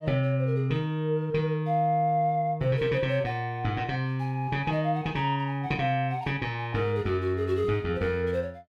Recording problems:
none

